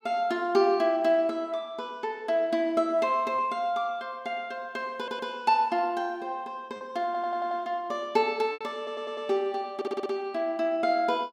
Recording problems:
packet loss; 1.4% of the sound replaced, filled with repeated pitch periods
stutter; 4 times, first at 5 s

